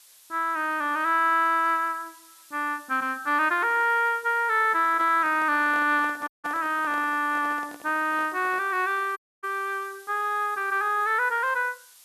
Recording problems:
hiss; slope +4 dB per octave, SNR 25 dB
microphone handling noise; from 4.5 to 8.5 s; peak -12 dB vs average level
audio cutting out; at 6.5 s and at 9 s

